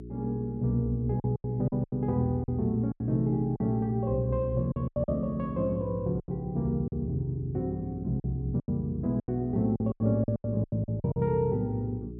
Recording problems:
electrical hum; 60 Hz, harmonics up to 420 Hz, SNR 12 dB
lost packets; 11% of the sound replaced, filled with silence

